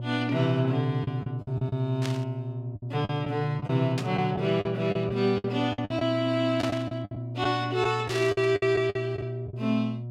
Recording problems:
electrical hum; 60 Hz, harmonics up to 600 Hz, SNR 8 dB
lost packets; 10% of the sound replaced, filled with the last packet
static burst; 4 times, first at 2 s; peak -3 dB vs average level

